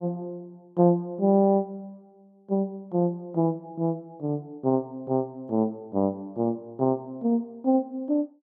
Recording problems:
none

